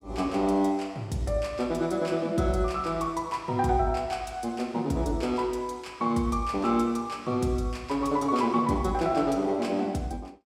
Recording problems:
none

